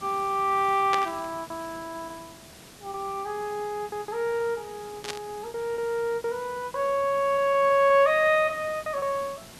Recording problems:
hiss; slope -3 dB per octave, SNR 20 dB
packet loss; 11% of the sound replaced, filled with repeated pitch periods
static burst; at 1 s and at 5 s; peak 0 dB vs average level

